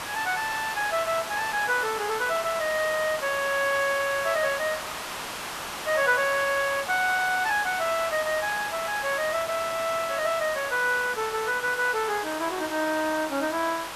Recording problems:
background hiss; SNR 8 dB

